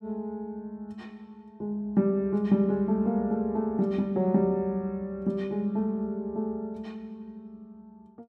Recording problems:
none

